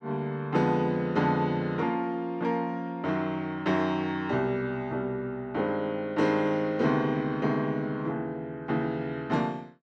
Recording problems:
none

